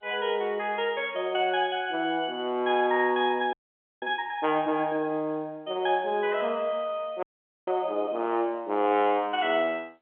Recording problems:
telephone audio; 220 Hz to 3.4 kHz, G.711
audio freezing; at 3.5 s and at 7 s

